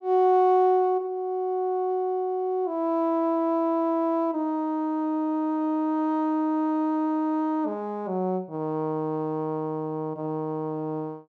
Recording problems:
none

